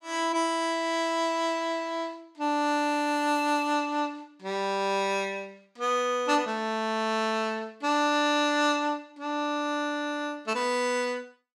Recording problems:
none

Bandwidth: 14 kHz